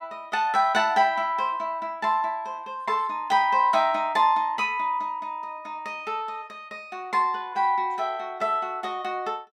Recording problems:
none

